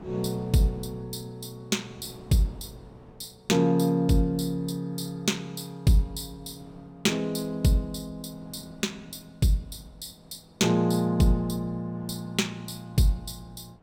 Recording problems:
wind on the microphone; below 530 Hz, SNR 25 dB

